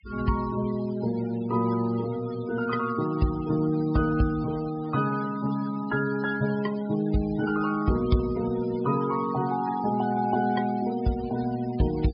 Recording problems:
low-pass filter; nothing above 5.5 kHz
noise reduction artefacts; signal-to-artefact ratio 17 dB

